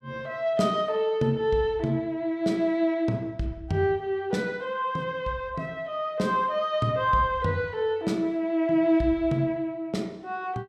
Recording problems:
none

